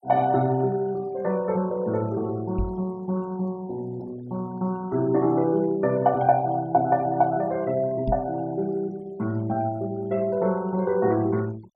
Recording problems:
denoising artefacts; signal-to-artefact ratio 25 dB
microphone bump; at 2.5 s and at 8 s; peak +1 dB vs average level

